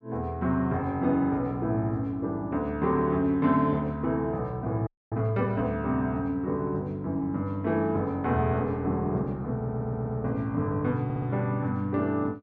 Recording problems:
frozen audio; at 5 s
stutter; at 9.5 s and at 11 s

